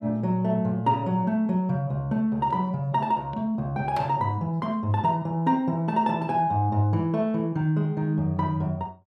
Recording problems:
none

